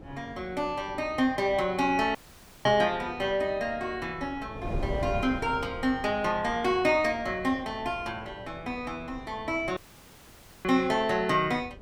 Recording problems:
wind on the microphone; below 370 Hz, SNR 14 dB
dropout; at 2 s for 0.5 s and at 10 s for 1 s

